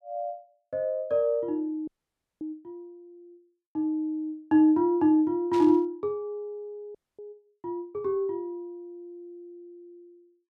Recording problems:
audio freezing; at 2 s for 0.5 s and at 7 s
burst of static; at 5.5 s; peak -11 dB vs average level

